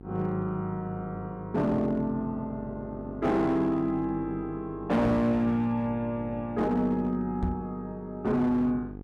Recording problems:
distorted audio; hard clipping, signal-to-distortion ratio 10 dB
electrical hum; 50 Hz, harmonics up to 900 Hz, SNR 14 dB
knock on the microphone; at 5 s and at 7.5 s; peak +2 dB vs average level

